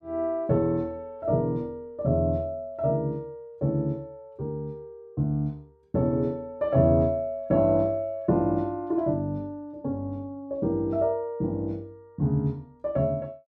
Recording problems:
none

